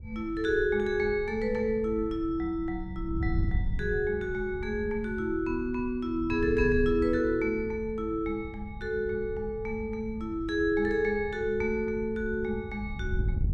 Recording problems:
wind on the microphone; below 100 Hz, SNR 9 dB

